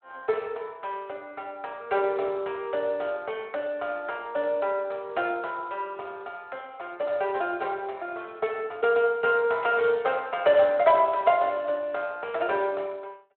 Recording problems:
phone line; 320 Hz to 3.5 kHz, Speex

